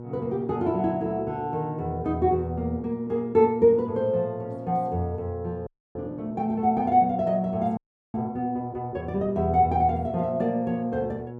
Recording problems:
mains hum; 60 Hz, harmonics up to 960 Hz, SNR 15 dB
audio freezing; at 5.5 s and at 8 s

